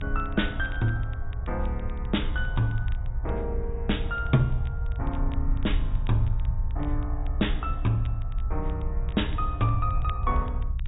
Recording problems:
low-pass filter; nothing above 4 kHz
low-frequency rumble; below 66 Hz, strongest tone 28 Hz, SNR 1 dB
crackle; vinyl, SNR 25 dB

